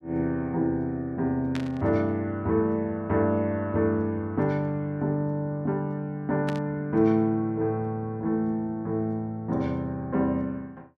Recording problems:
burst of static; at 1.5 s and at 6.5 s; peak -5 dB vs average level

